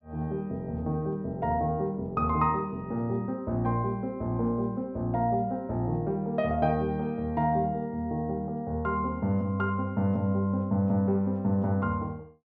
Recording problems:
none

